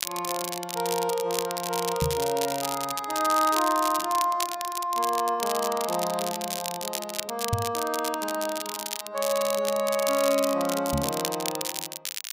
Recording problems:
crackling; vinyl, SNR 5 dB
microphone bump; at 2 s, at 7.5 s and at 11 s; peak +4 dB vs average level

